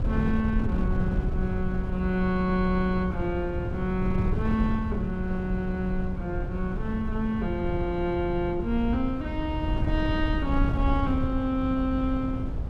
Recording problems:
wind on the microphone; below 130 Hz, SNR 2 dB

